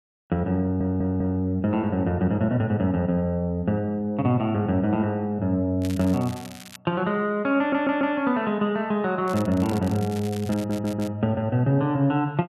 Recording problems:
audio stuttering; at 0.5 s, at 7.5 s and at 11 s
crackle; at 6 s and from 9.5 to 11 s; loose cable, SNR 19 dB

